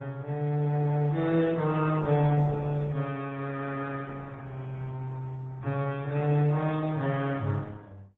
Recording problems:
codec artefacts; AAC, then Opus, log-spectral distance 3 dB

